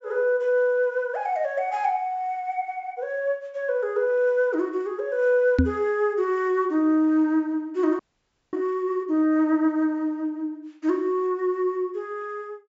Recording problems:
treble missing; nothing above 8 kHz
knock on the microphone; at 5.5 s; peak +8 dB vs average level
frozen audio; at 8 s for 0.5 s

